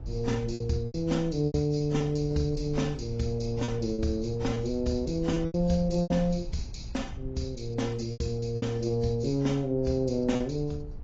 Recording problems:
lossy codec; AAC, log-spectral distance 2 dB, nothing above 7.3 kHz
rumble; below 86 Hz, SNR 13 dB
packet loss; 7% of the sound replaced, filled with repeated pitch periods

